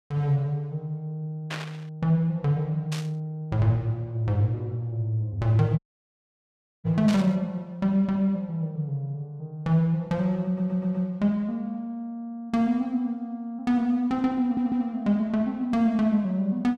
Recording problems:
burst of static; at 1.5 s, at 3 s and at 7 s; peak -3 dB vs average level
audio cutting out; at 6 s for 1 s
audio stuttering; at 10 s and at 14 s

